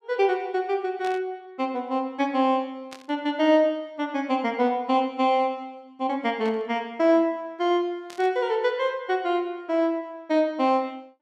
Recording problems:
static burst; 4 times, first at 1 s; peak -12 dB vs average level

